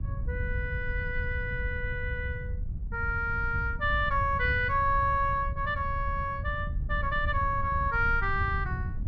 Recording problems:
wind on the microphone; below 96 Hz, SNR 5 dB

